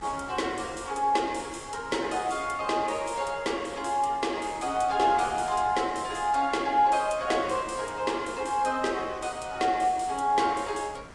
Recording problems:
lossy codec; Vorbis, log-spectral distance 3 dB, nothing above 10.1 kHz
wind noise; below 1.5 kHz, SNR 20 dB

